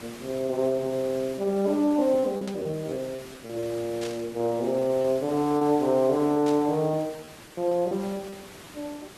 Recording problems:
background hiss; slope -3 dB per octave, SNR 18 dB
packet loss; 8% of the sound replaced, filled with repeated pitch periods
burst of static; at 2.5 s, at 4 s and at 6.5 s; peak -9 dB vs average level

